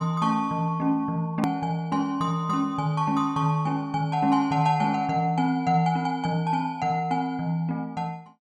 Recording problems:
click at an edit; at 1.5 s

